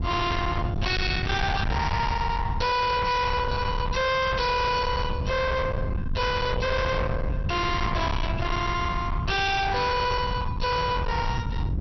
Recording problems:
lossy codec; MP2, log-spectral distance 3 dB, nothing above 5.8 kHz
distortion; hard clipping, signal-to-distortion ratio 6 dB
rumble; below 600 Hz, SNR 4 dB

